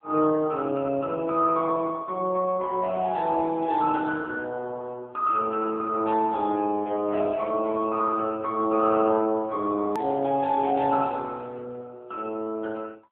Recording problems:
phone line; 220 Hz to 3.5 kHz, AMR-NB
hard cut with a click; at 10 s

